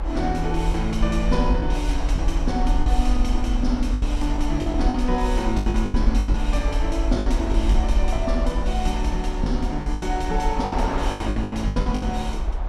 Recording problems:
low-frequency rumble; below 50 Hz, SNR 0 dB
wind on the microphone; below 1.1 kHz, SNR 10 dB
lost packets; 11% of the sound replaced, filled with the last packet

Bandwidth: 13 kHz